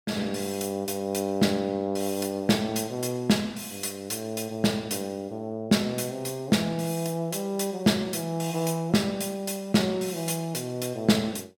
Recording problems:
none

